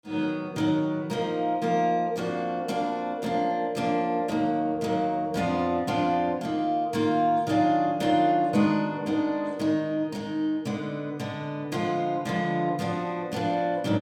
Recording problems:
none

